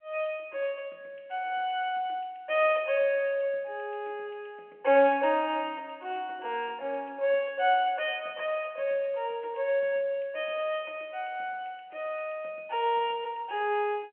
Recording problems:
phone line; 320 Hz to 3.2 kHz, G.711

